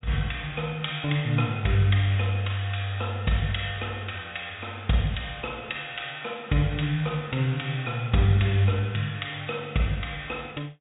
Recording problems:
treble missing; nothing above 4 kHz

